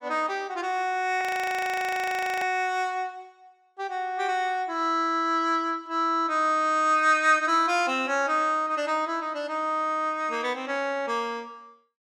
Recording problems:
frozen audio; at 1 s for 1 s

